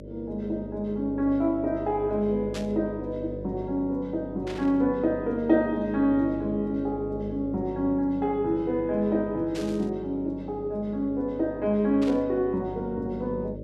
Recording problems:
electrical hum; 50 Hz, harmonics up to 600 Hz, SNR 12 dB
burst of static; 4 times, first at 2.5 s; peak -7 dB vs average level

